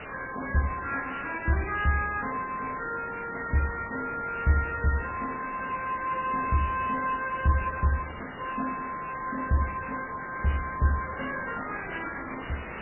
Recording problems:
lossy compression; MP3, log-spectral distance 20 dB, nothing above 2.6 kHz
hiss; SNR 10 dB

